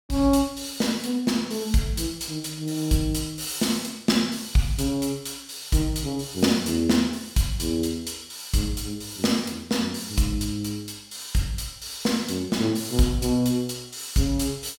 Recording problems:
none

